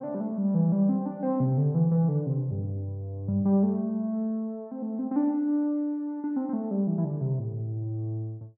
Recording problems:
none

